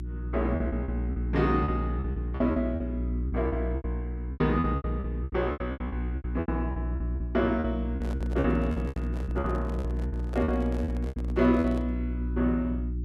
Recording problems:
mains hum; 60 Hz, harmonics up to 360 Hz, SNR 2 dB
packet loss; 16% of the sound replaced, filled with repeated pitch periods
handling noise; from 8 to 12 s; peak -8 dB vs average level

